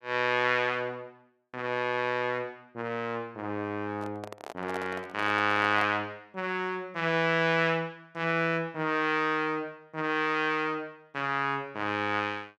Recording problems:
handling noise; from 4 to 6 s; peak -4 dB vs average level

